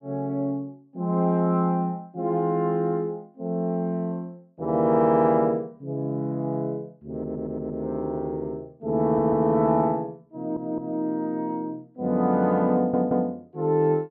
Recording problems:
stutter; 4 times, first at 7 s

